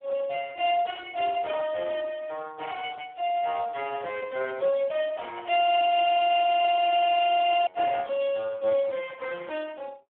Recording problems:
telephone audio; 300 Hz to 2.6 kHz, Speex
frozen audio; at 5.5 s for 2 s

